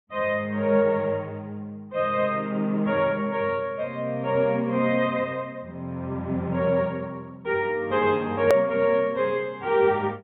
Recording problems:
low-pass filter; nothing above 4 kHz
click at an edit; at 8.5 s

